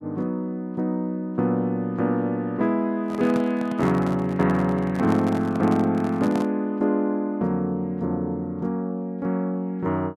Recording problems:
handling noise; from 3 to 6.5 s; peak -4 dB vs average level

